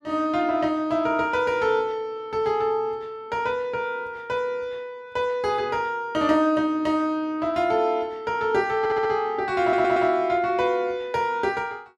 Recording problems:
stutter; at 9 s and at 9.5 s

